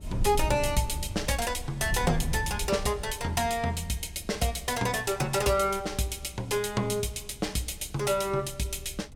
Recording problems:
wind on the microphone; below 92 Hz, SNR 11 dB

